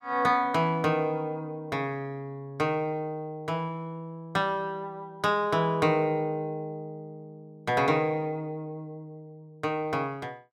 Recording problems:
none

